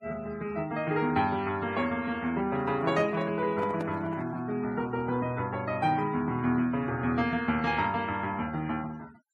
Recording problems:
noise reduction artefacts; signal-to-artefact ratio 22 dB
microphone handling noise; from 2.5 to 4.5 s; peak -4 dB vs average level

